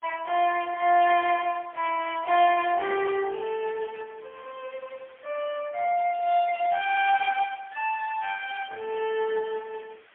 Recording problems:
phone line; 370 Hz to 3.1 kHz, AMR-NB, then MP3
hiss; SNR 29 dB
burst of static; at 4 s; peak -18 dB vs average level

